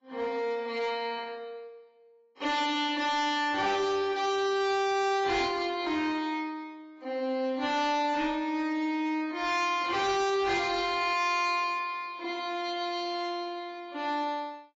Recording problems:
codec artefacts; AAC, then AAC, log-spectral distance 2 dB, nothing above 7.1 kHz
distorted audio; hard clipping, signal-to-distortion ratio 11 dB

